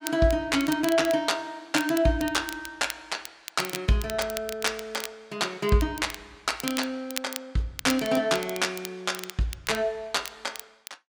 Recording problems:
crackle; vinyl, SNR 12 dB

